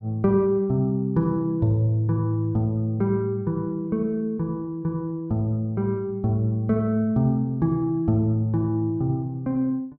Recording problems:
none

